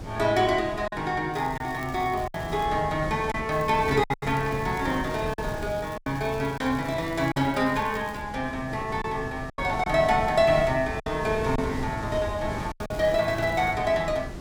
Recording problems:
wind noise; below 420 Hz, SNR 11 dB
packet loss; 5% of the sound replaced, filled with silence
crackling; from 1.5 to 2.5 s, from 3.5 to 8 s and at 13 s; loose cable, SNR 24 dB

